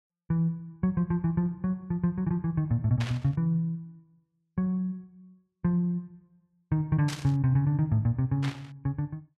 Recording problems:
burst of static; at 3 s, at 7 s and at 8.5 s; peak -5 dB vs average level

